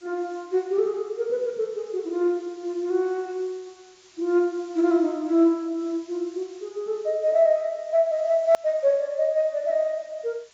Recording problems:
lossy compression; AAC, log-spectral distance 3 dB, nothing above 19.5 kHz
background hiss; slope +1 dB per octave, SNR 29 dB
click at an edit; at 8.5 s

